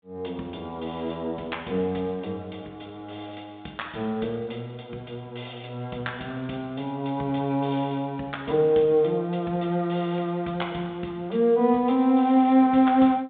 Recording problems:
phone line; 190 Hz to 3.8 kHz, G.726

